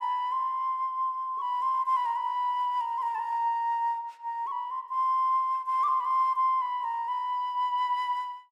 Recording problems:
none

